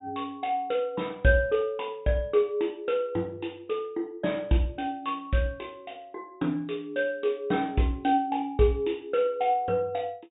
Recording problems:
low-pass filter; nothing above 4 kHz

